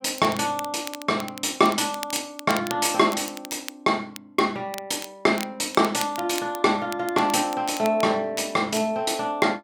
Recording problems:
crackle; vinyl, SNR 15 dB

